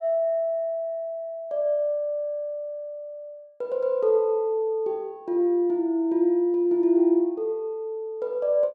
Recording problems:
none

